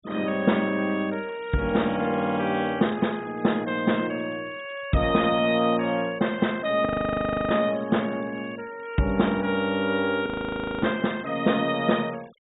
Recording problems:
treble missing; nothing above 4 kHz
noise reduction artefacts; signal-to-artefact ratio 24 dB
audio freezing; at 7 s for 0.5 s and at 10 s for 0.5 s

